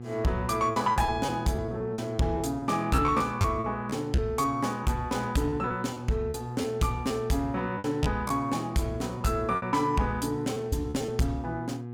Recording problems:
distortion; soft clipping, signal-to-distortion ratio 12 dB
electrical hum; 60 Hz, harmonics up to 840 Hz, SNR 11 dB
packet loss; 8% of the sound replaced, filled with repeated pitch periods

